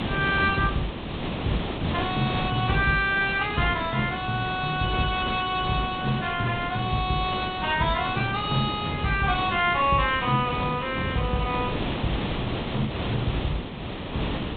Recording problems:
treble cut off; nothing above 3.8 kHz
lossy compression; Opus, then G.722, log-spectral distance 4 dB
hiss; SNR 6 dB

